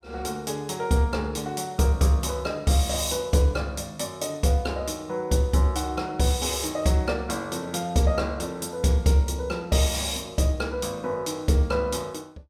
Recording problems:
none

